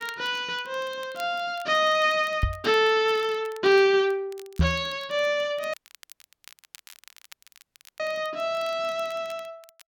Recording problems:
crackle; vinyl, SNR 25 dB
microphone bump; at 2.5 s and at 4.5 s; peak +6 dB vs average level
audio cutting out; at 5.5 s for 2.5 s

